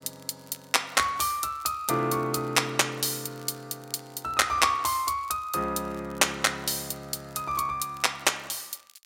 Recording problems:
crackle; vinyl, SNR 27 dB

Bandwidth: 16.5 kHz